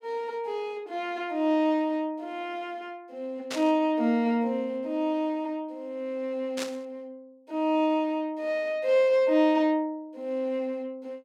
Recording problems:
burst of static; at 3.5 s and at 6.5 s; peak -3 dB vs average level

